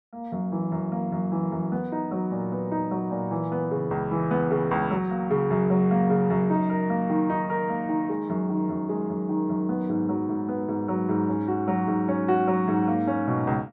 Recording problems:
none

